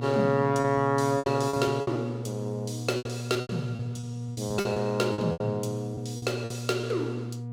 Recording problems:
electrical hum; 60 Hz, harmonics up to 720 Hz, SNR 7 dB
lost packets; 13% of the sound replaced, filled with repeated pitch periods

